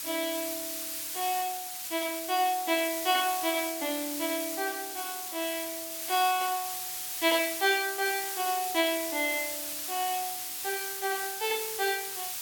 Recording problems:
hiss; slope +3 dB per octave, SNR 3 dB

